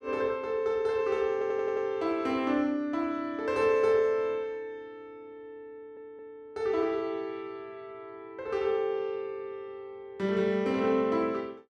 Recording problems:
audio stuttering; at 1.5 s and at 6 s

